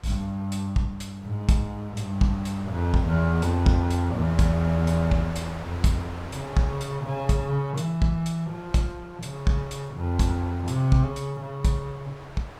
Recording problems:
wind noise; below 1.4 kHz, SNR 16 dB

